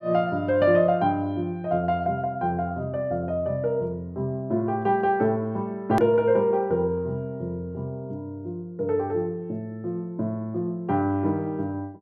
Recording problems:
click at an edit; at 6 s

